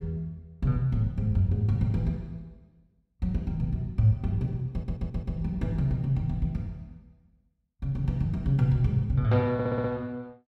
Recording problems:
stutter; at 4.5 s and at 9.5 s

